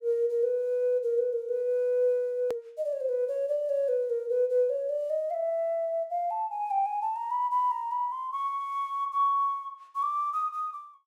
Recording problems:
click at an edit; at 2.5 s

